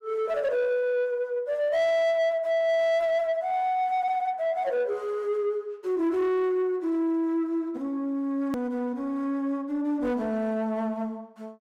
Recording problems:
distortion; soft clipping, signal-to-distortion ratio 11 dB
hard cut with a click; at 8.5 s

